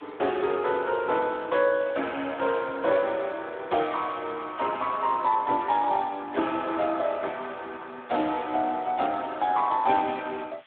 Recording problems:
telephone audio; 260 Hz to 3.5 kHz, Speex
hiss; SNR 27 dB

